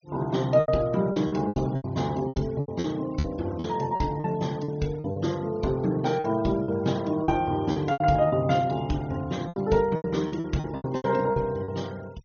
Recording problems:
treble missing; nothing above 6.5 kHz
denoising artefacts; signal-to-artefact ratio 23 dB
packet loss; 13% of the sound replaced, filled with repeated pitch periods

